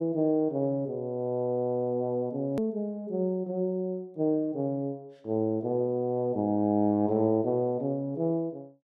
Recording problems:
hard cut with a click; at 2.5 s

